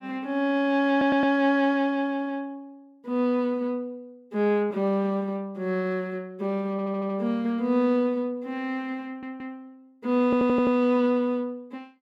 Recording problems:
stutter; 4 times, first at 1 s

